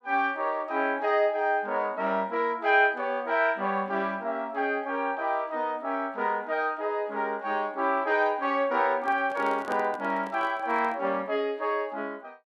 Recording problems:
microphone handling noise; from 9 to 11 s; peak -5 dB vs average level

